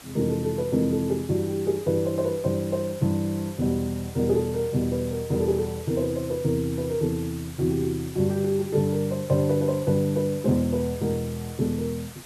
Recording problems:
hiss; slope -1 dB per octave, SNR 18 dB

